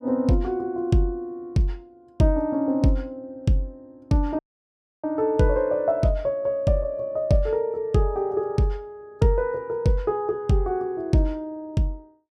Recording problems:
dropout; at 4.5 s for 0.5 s

